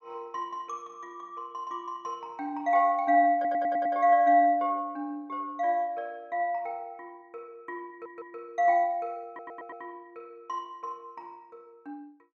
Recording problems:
stutter; at 3.5 s, at 8 s and at 9.5 s

